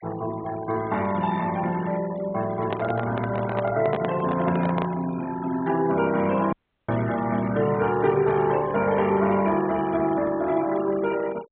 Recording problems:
treble cut off; nothing above 4 kHz
noise reduction artefacts; signal-to-artefact ratio 17 dB
microphone handling noise; from 2.5 to 5 s; peak 0 dB vs average level
audio cutting out; at 6.5 s

